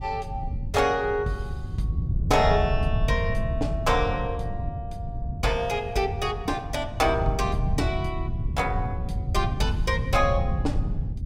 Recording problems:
wind noise; below 120 Hz, SNR 3 dB

